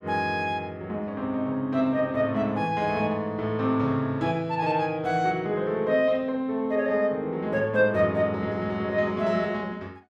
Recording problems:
none

